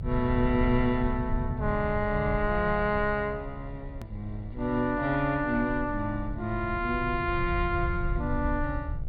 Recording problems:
treble cut off; nothing above 4.7 kHz
hum; 60 Hz, harmonics up to 2.2 kHz, SNR 26 dB
rumble; below 110 Hz, SNR 7 dB
hard cut with a click; at 4 s

